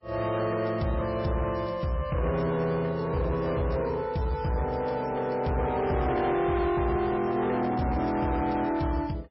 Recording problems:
lossy codec; MP3, log-spectral distance 3 dB, nothing above 5.5 kHz
distortion; soft clipping, signal-to-distortion ratio 10 dB

